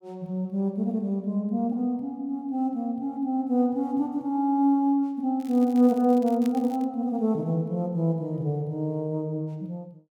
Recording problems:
crackle; from 5.5 to 7 s; loose cable, SNR 25 dB

